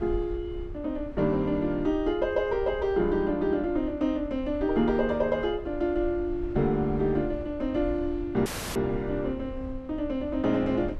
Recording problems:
rumble; below 74 Hz, SNR 14 dB
audio cutting out; at 8.5 s

